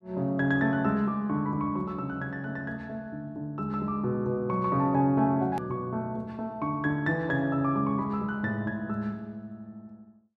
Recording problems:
edit click; at 5.5 s

